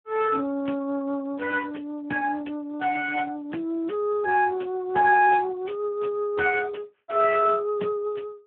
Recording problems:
phone line; 220 Hz to 2.6 kHz, Speex

